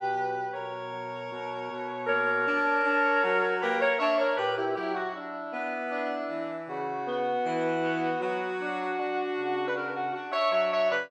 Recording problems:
none

